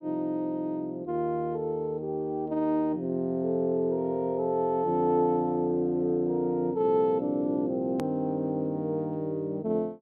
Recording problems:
edit click; at 8 s

